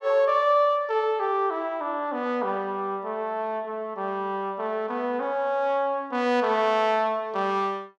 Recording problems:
none

